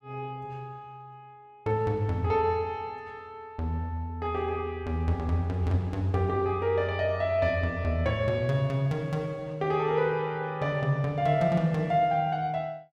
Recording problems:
none

